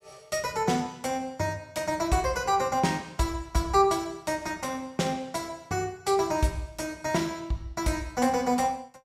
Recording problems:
none

